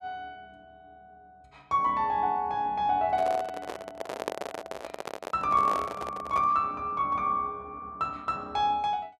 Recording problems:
handling noise; from 3 to 6.5 s; peak 0 dB vs average level

